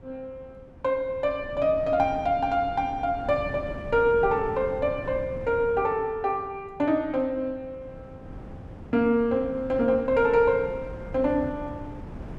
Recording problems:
wind noise; below 300 Hz, SNR 16 dB

